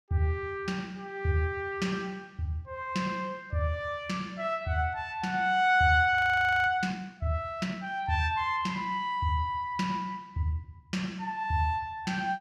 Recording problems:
frozen audio; at 6 s for 0.5 s

